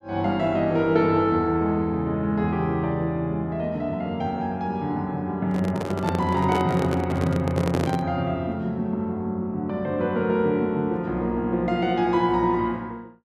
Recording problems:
handling noise; from 5.5 to 8 s; peak +1 dB vs average level

